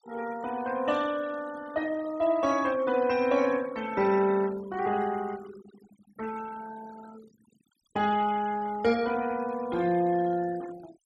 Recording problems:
denoising artefacts; signal-to-artefact ratio 19 dB

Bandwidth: 12.5 kHz